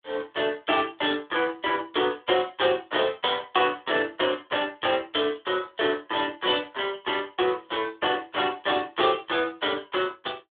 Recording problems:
telephone audio; 300 Hz to 3.7 kHz, Speex

